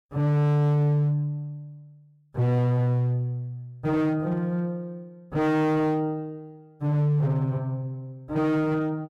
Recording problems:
distortion; hard clipping, signal-to-distortion ratio 8 dB

